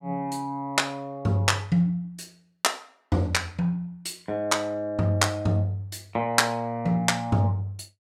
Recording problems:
none

